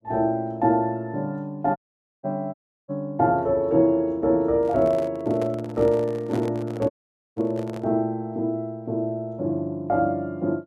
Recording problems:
dropout; at 2 s, at 2.5 s and at 7 s
microphone handling noise; from 4.5 to 8 s; peak -5 dB vs average level

